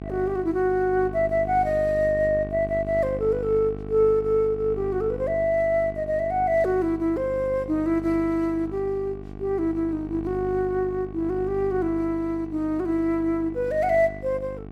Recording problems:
hum; 50 Hz, harmonics up to 1.1 kHz, SNR 12 dB

